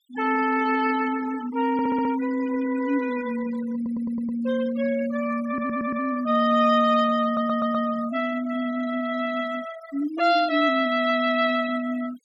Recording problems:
denoising artefacts; signal-to-artefact ratio 15 dB
audio stuttering; 4 times, first at 1.5 s

